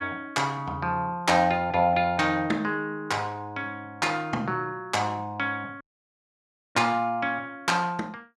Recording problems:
dropout; at 6 s for 1 s

